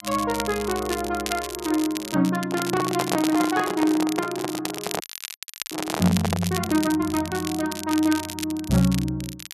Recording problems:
crackling; vinyl, SNR 9 dB
microphone handling noise; from 2.5 to 7 s; peak +2 dB vs average level
audio freezing; at 5 s for 0.5 s

